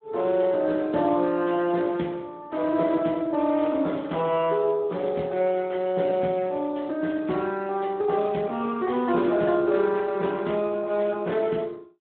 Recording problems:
telephone audio; 130 Hz to 3.6 kHz, Speex

